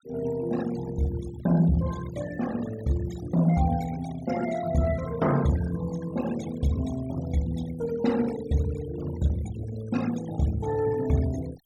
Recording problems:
denoising artefacts; signal-to-artefact ratio 16 dB

